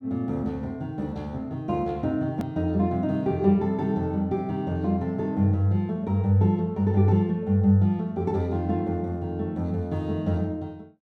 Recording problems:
hard cut with a click; at 2.5 s

